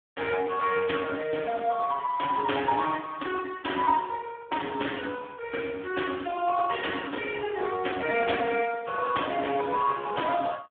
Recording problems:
telephone audio; 300 Hz to 3.3 kHz, Speex

